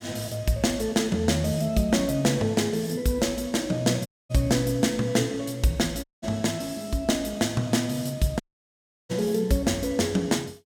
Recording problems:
audio cutting out; at 4 s, at 6 s and at 8.5 s for 0.5 s

